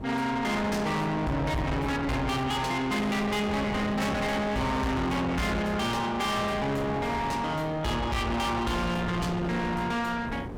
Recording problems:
distortion; soft clipping, signal-to-distortion ratio 6 dB
wind on the microphone; below 870 Hz, SNR 9 dB

